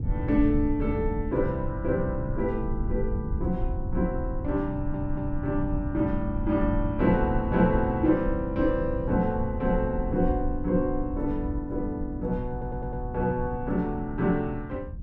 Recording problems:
rumble; below 100 Hz, SNR 6 dB
audio stuttering; at 4.5 s and at 13 s

